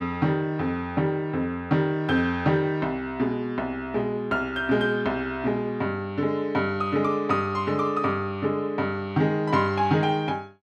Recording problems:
none

